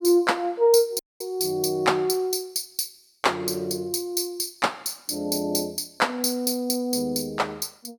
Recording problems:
dropout; at 1 s

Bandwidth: 18 kHz